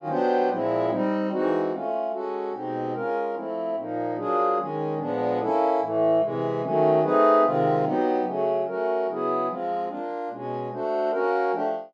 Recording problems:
none

